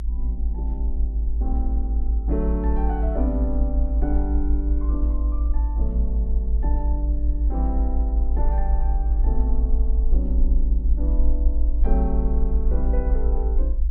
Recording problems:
electrical hum; 60 Hz, harmonics up to 360 Hz, SNR 13 dB
rumble; below 54 Hz, strongest tone 52 Hz, SNR -8 dB

